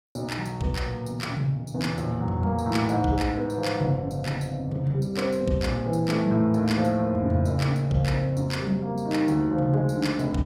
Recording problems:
none

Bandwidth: 16.5 kHz